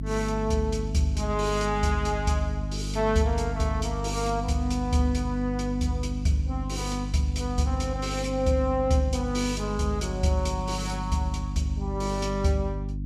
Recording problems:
hum; 50 Hz, harmonics up to 300 Hz, SNR 5 dB

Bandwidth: 15 kHz